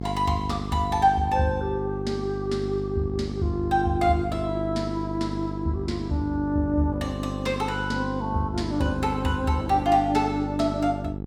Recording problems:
hum; 50 Hz, harmonics up to 800 Hz, SNR 6 dB

